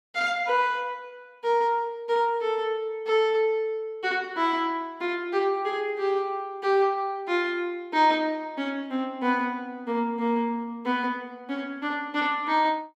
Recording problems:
none

